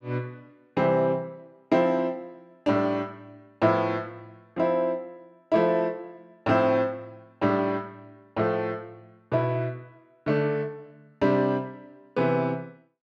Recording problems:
none

